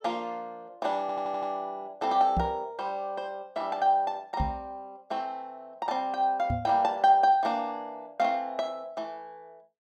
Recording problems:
audio stuttering; at 1 s
knock on the microphone; at 2.5 s, at 4.5 s and at 6.5 s; peak +2 dB vs average level

